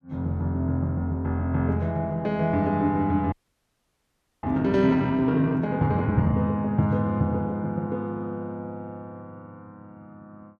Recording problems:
audio freezing; at 3.5 s for 1 s

